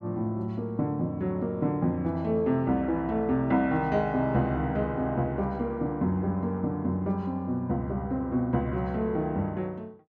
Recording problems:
none

